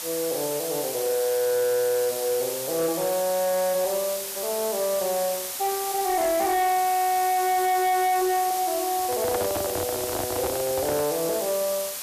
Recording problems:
distortion; hard clipping, signal-to-distortion ratio 11 dB
hiss; slope +1 dB per octave, SNR 5 dB
handling noise; from 9 to 11 s; peak -1 dB vs average level

